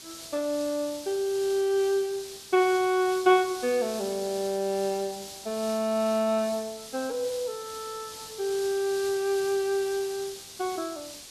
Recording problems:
background hiss; SNR 13 dB

